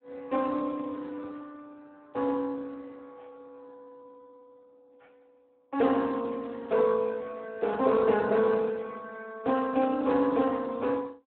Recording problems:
phone line; 240 Hz to 3.6 kHz, Speex

